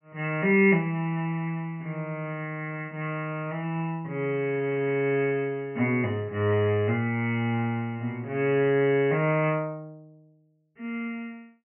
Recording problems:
low-pass filter; nothing above 3 kHz

